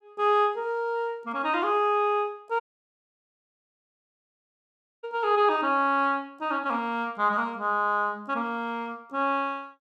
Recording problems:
audio cutting out; at 2.5 s for 2.5 s

